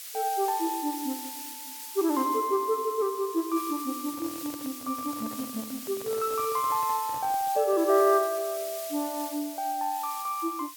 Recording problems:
hiss; SNR 10 dB
handling noise; from 4 to 7.5 s; peak -12 dB vs average level

